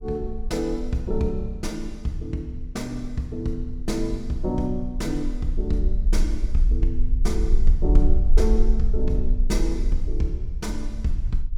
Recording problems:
rumble; below 44 Hz, SNR -2 dB

